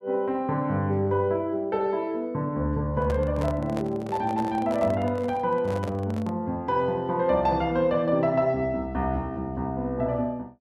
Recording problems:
microphone handling noise; from 3 to 6.5 s; peak -4 dB vs average level

